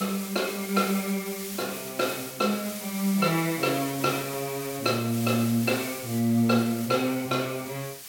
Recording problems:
background hiss; slope +2 dB per octave, SNR 10 dB

